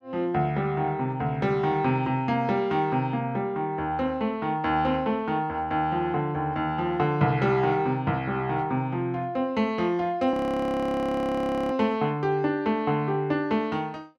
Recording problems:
audio freezing; at 10 s for 1.5 s

